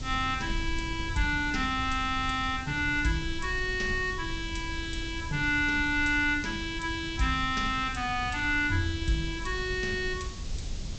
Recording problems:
treble missing; nothing above 8 kHz
hiss; slope +5 dB per octave, SNR 17 dB
low-frequency rumble; below 96 Hz, SNR 11 dB

